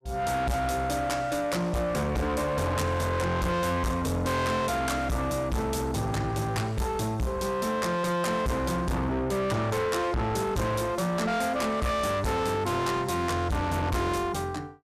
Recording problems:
distorted audio; soft clipping, signal-to-distortion ratio 6 dB

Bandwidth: 14.5 kHz